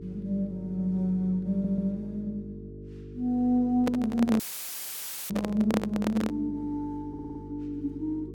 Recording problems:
hum; 50 Hz, harmonics up to 450 Hz, SNR 14 dB
audio stuttering; at 1.5 s and at 7 s
microphone handling noise; from 4 to 6.5 s; peak +3 dB vs average level
dropout; at 4.5 s for 1 s; filled with static

